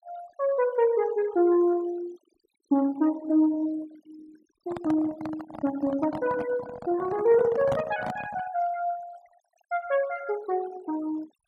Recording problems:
denoising artefacts; signal-to-artefact ratio 21 dB
microphone handling noise; from 4.5 to 8.5 s; peak -1 dB vs average level

